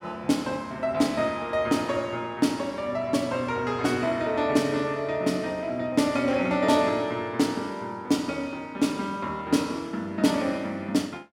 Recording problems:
none

